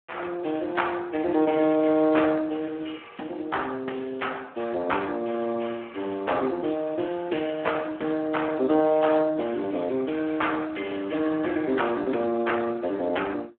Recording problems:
telephone audio; 220 Hz to 3.4 kHz, Speex

